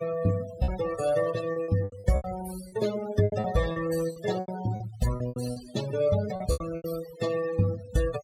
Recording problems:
denoising artefacts; signal-to-artefact ratio 12 dB
packet loss; 13% of the sound replaced, filled with repeated pitch periods

